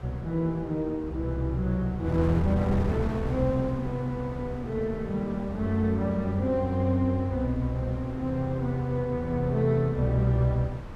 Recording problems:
wind on the microphone; below 310 Hz, SNR 11 dB

